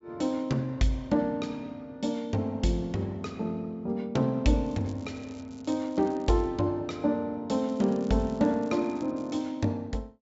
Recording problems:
low-pass filter; nothing above 8 kHz
crackling; from 4.5 to 6.5 s and from 7.5 to 9.5 s; loose cable, SNR 27 dB

